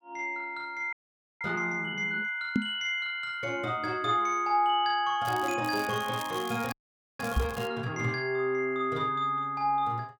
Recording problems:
frozen audio; at 1 s and at 6.5 s
microphone thump; at 2.5 s and at 7.5 s; peak +6 dB vs average level
crackle; from 5.5 to 7.5 s; loose cable, SNR 16 dB

